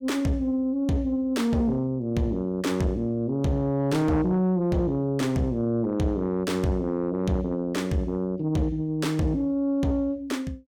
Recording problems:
distortion; soft clipping, signal-to-distortion ratio 11 dB

